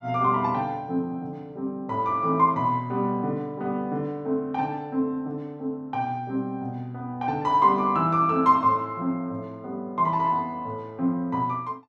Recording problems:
none

